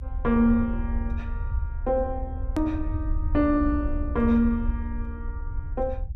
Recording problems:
rumble; below 74 Hz, SNR 6 dB
edit click; at 2.5 s

